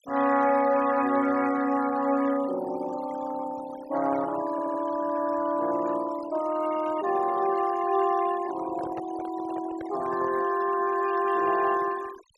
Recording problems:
noise reduction artefacts; signal-to-artefact ratio 16 dB
stutter; at 4.5 s
handling noise; from 8.5 to 10 s; peak -9 dB vs average level

